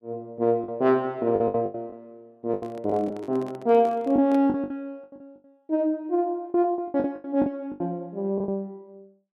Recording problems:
lost packets; 13% of the sound replaced, filled with the last packet
handling noise; from 2.5 to 4.5 s; peak -11 dB vs average level

